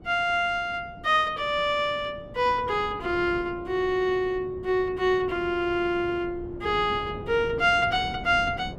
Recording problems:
wind noise; below 350 Hz, SNR 16 dB

